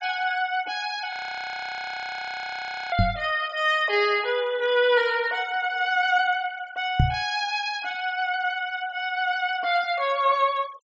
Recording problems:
treble cut off; nothing above 7.5 kHz
denoising artefacts; signal-to-artefact ratio 21 dB
audio freezing; at 1 s for 2 s
microphone bump; at 3 s and at 7 s; peak +7 dB vs average level

